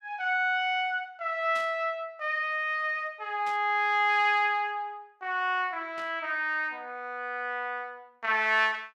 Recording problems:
static burst; at 1.5 s, at 3.5 s and at 6 s; peak -12 dB vs average level

